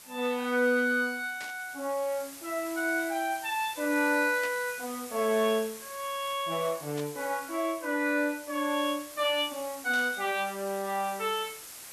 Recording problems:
hiss; slope 0 dB per octave, SNR 14 dB
burst of static; 4 times, first at 1.5 s; peak -8 dB vs average level

